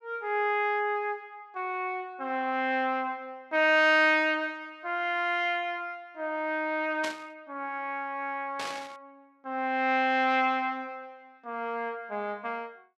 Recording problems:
burst of static; at 7 s and at 8.5 s; peak -4 dB vs average level

